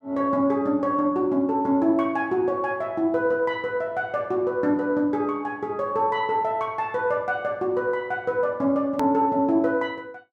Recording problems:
hard cut with a click; at 9 s

